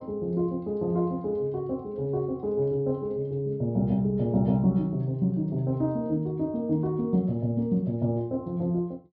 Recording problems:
treble cut off; nothing above 5.5 kHz

